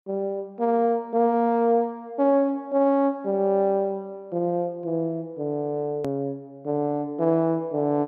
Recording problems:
click at an edit; at 6 s

